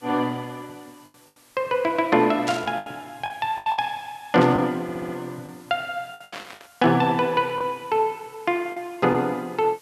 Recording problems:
background hiss; slope 0 dB per octave, SNR 28 dB
packet loss; 6% of the sound replaced, filled with the last packet
burst of static; at 2.5 s, at 4.5 s and at 6 s; peak -3 dB vs average level
audio stuttering; at 5 s

